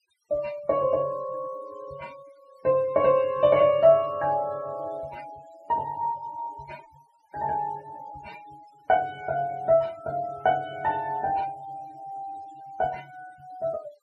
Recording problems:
denoising artefacts; signal-to-artefact ratio 25 dB

